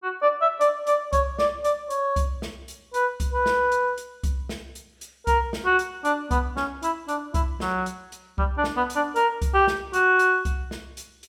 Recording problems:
none

